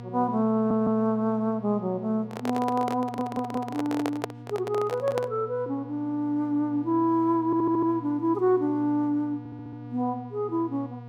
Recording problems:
hum; 60 Hz, harmonics up to 1.2 kHz, SNR 15 dB
stutter; 4 times, first at 0.5 s
handling noise; from 2.5 to 5.5 s; peak 0 dB vs average level

